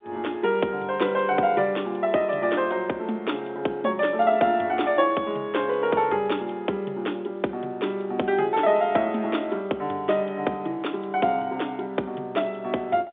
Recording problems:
phone line; 220 Hz to 3.6 kHz, G.711

